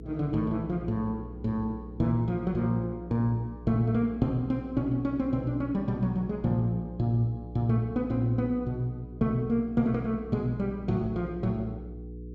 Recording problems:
electrical hum; 60 Hz, harmonics up to 480 Hz, SNR 14 dB

